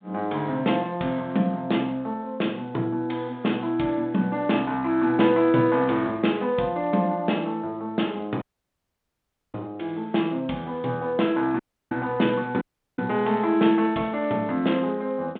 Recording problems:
phone line; 150 Hz to 3.7 kHz, G.726
audio cutting out; at 8.5 s for 1 s, at 12 s and at 13 s

